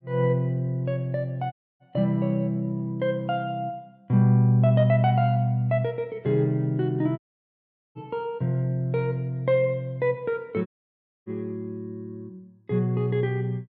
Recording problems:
dropout; at 1.5 s, at 7 s for 1 s and at 11 s for 0.5 s

